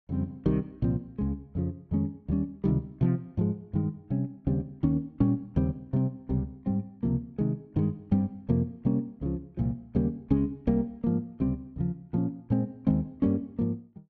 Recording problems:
none

